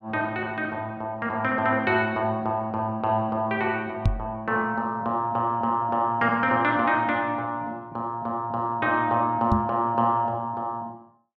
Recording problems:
knock on the microphone; at 4 s and at 9.5 s; peak +6 dB vs average level

